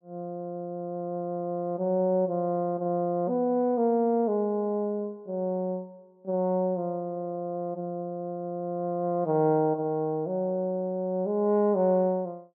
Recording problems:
none

